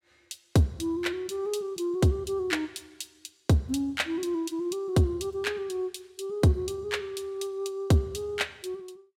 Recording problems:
none

